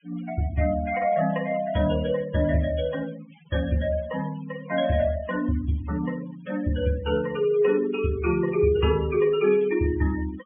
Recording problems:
low-pass filter; nothing above 3.4 kHz
denoising artefacts; signal-to-artefact ratio 18 dB

